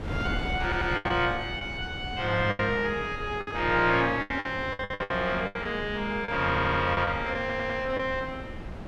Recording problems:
wind noise; below 430 Hz, SNR 11 dB
packet loss; 11% of the sound replaced, filled with the last packet
stutter; at 0.5 s, at 6.5 s and at 7.5 s

